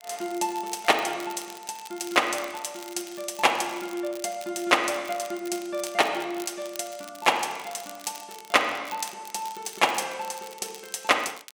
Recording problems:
crackle; vinyl, SNR 17 dB

